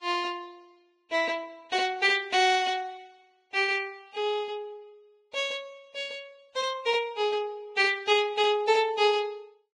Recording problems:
lossy compression; Vorbis, log-spectral distance 2 dB, nothing above 10.1 kHz

